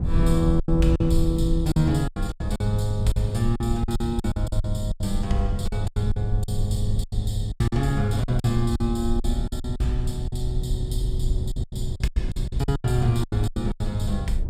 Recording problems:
rumble; below 80 Hz, SNR 3 dB
packet loss; 15% of the sound replaced, filled with silence

